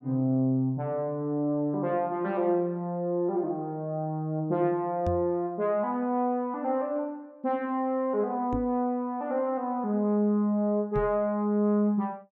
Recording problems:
knock on the microphone; at 5 s, at 8.5 s and at 11 s; peak 0 dB vs average level

